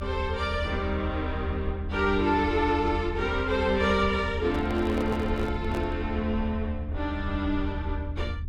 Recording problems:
low-frequency rumble; below 80 Hz, strongest tone 78 Hz, SNR 6 dB
microphone handling noise; from 4.5 to 6 s; peak -5 dB vs average level

